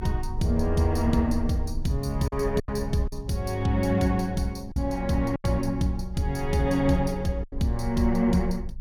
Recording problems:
rumble; below 64 Hz, strongest tone 22 Hz, SNR 10 dB
packet loss; 4% of the sound replaced, filled with silence

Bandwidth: 18 kHz